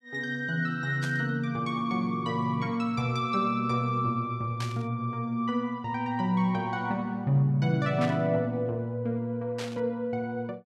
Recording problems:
static burst; 4 times, first at 1 s; peak -5 dB vs average level

